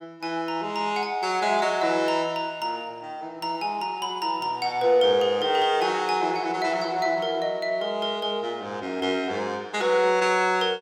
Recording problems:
none

